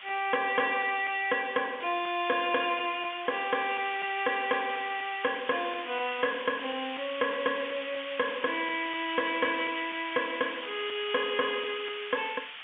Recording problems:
phone line; 220 Hz to 3.5 kHz, G.711
distorted audio; soft clipping, signal-to-distortion ratio 7 dB
background hiss; SNR 10 dB

